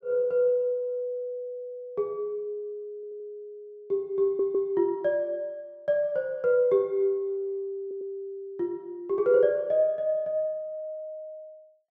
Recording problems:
audio stuttering; at 3 s, at 4 s and at 8 s

